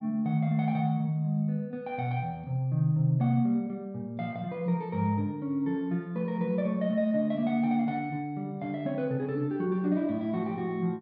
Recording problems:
none

